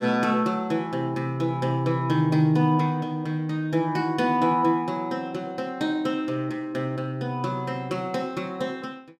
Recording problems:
none

